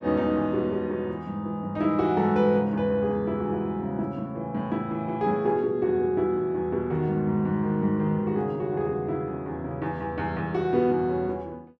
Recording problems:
none

